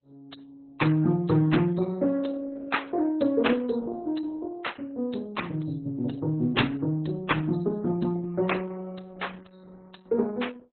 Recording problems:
codec artefacts; MP3, then Opus, log-spectral distance 5 dB, nothing above 4 kHz

